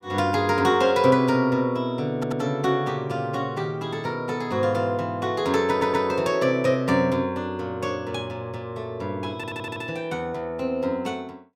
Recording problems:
audio stuttering; at 2 s, at 5.5 s and at 9.5 s

